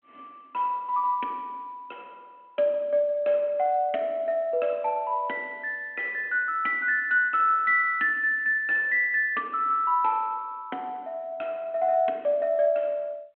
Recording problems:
phone line; 240 Hz to 3.3 kHz, G.726

